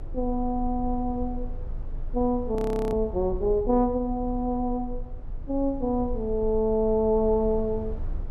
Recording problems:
low-frequency rumble; below 52 Hz, strongest tone 24 Hz, SNR 11 dB
frozen audio; at 2.5 s

